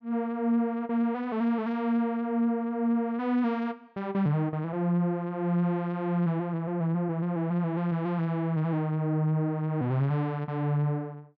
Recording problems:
treble cut off; nothing above 8 kHz

